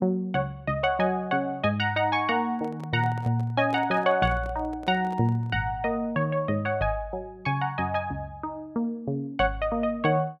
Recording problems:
microphone handling noise; from 2.5 to 5.5 s; peak -10 dB vs average level

